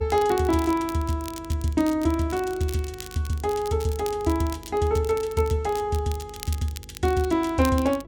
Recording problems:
hum; 50 Hz, harmonics up to 500 Hz, SNR 22 dB
crackling; vinyl, SNR 17 dB

